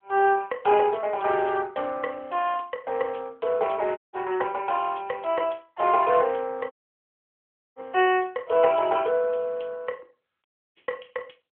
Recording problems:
telephone audio; 320 Hz to 3.3 kHz, AMR-NB
audio cutting out; at 4 s, at 6.5 s for 1 s and at 10 s

